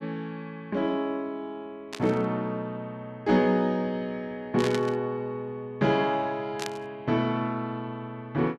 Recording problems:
burst of static; at 2 s, at 4.5 s and at 6.5 s; peak -1 dB vs average level

